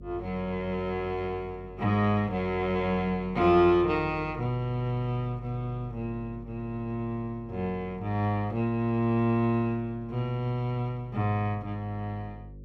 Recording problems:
hum; 50 Hz, harmonics up to 550 Hz, SNR 18 dB

